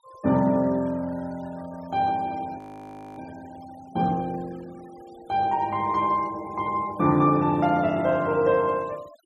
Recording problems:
denoising artefacts; signal-to-artefact ratio 26 dB
frozen audio; at 2.5 s for 0.5 s

